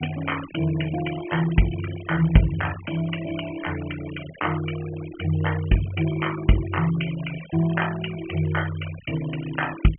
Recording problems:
low-pass filter; nothing above 3.2 kHz
denoising artefacts; signal-to-artefact ratio 14 dB

